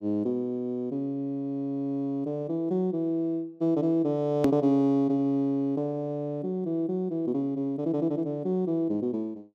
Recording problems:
hard cut with a click; at 4.5 s

